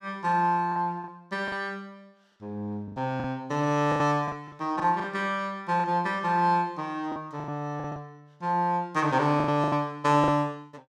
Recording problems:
lost packets; 9% of the sound replaced, filled with the last packet

